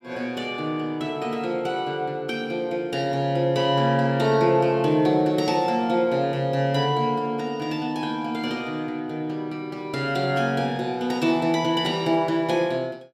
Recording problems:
none

